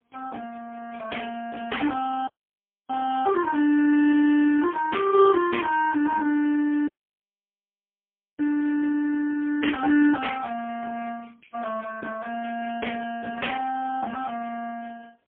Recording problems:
telephone audio; 260 Hz to 3.3 kHz, AMR-NB, then MP3
audio cutting out; at 2.5 s for 0.5 s and at 7 s for 1.5 s

